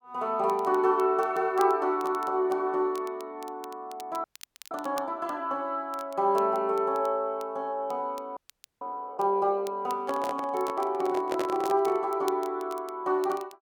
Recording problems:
crackle; vinyl, SNR 23 dB
frozen audio; at 4 s and at 8.5 s
microphone handling noise; from 10 to 12 s; peak 0 dB vs average level

